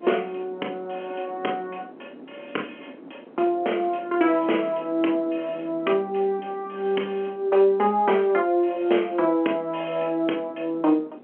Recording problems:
phone line; 240 Hz to 3.3 kHz, G.711
wind noise; below 510 Hz, SNR 22 dB

